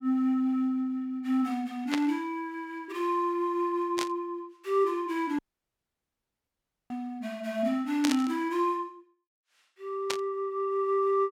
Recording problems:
static burst; 4 times, first at 2 s; peak +3 dB vs average level
audio cutting out; at 5.5 s for 1.5 s

